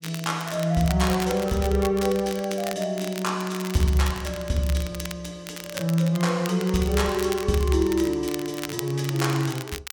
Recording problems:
crackling; vinyl, SNR 12 dB

